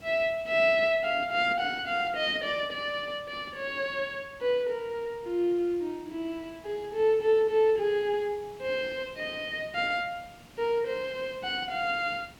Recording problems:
hiss; slope -3 dB per octave, SNR 24 dB

